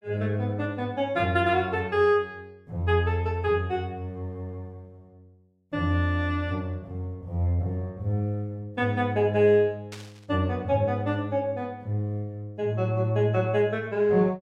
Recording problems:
burst of static; at 10 s; peak -10 dB vs average level

